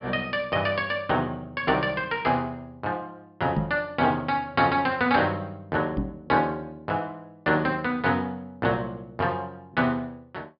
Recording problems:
low-pass filter; nothing above 5.5 kHz
knock on the microphone; at 3.5 s and at 6 s; peak +3 dB vs average level

